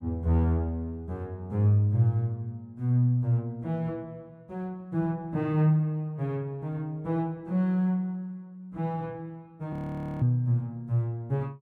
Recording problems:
audio freezing; at 9.5 s

